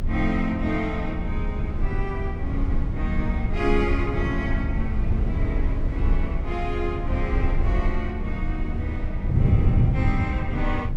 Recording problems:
low-frequency rumble; below 74 Hz, strongest tone 28 Hz, SNR -1 dB
wind noise; below 150 Hz, SNR 0 dB

